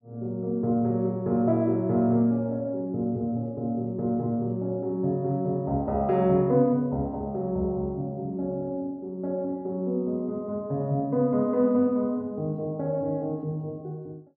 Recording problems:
none

